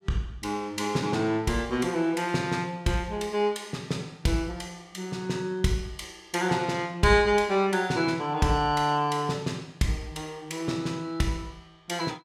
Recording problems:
none

